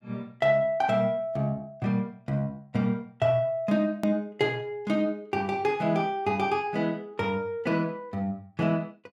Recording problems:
click at an edit; at 4 s

